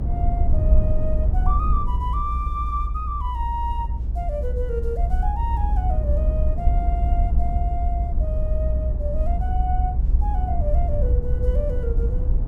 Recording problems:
rumble; below 62 Hz, SNR -7 dB

